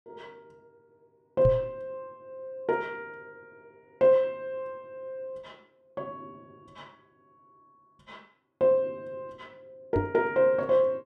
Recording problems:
microphone bump; at 1.5 s and at 10 s; peak +3 dB vs average level

